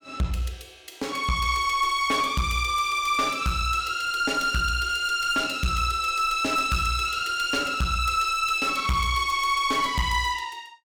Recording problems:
distorted audio; hard clipping, uneven, signal-to-distortion ratio 10 dB

